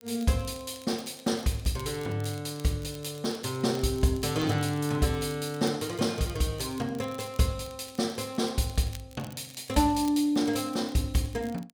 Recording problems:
crackling; vinyl, SNR 22 dB

